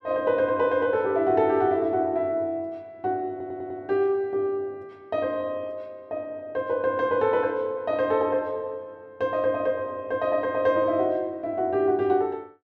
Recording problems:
audio stuttering; at 3.5 s

